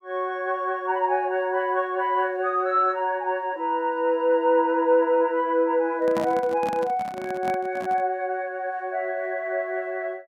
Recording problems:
microphone handling noise; from 6 to 8 s; peak -3 dB vs average level

